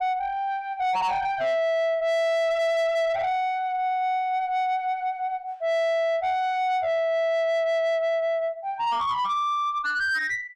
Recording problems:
distorted audio; soft clipping, signal-to-distortion ratio 7 dB

